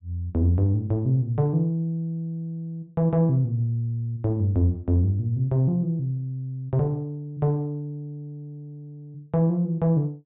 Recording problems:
treble cut off; nothing above 4 kHz

